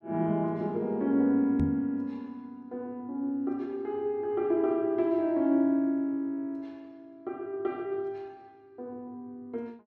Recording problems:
knock on the microphone; at 1.5 s; peak +4 dB vs average level

